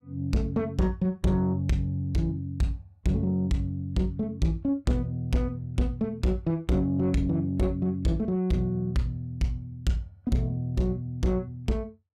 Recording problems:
distortion; soft clipping, signal-to-distortion ratio 11 dB

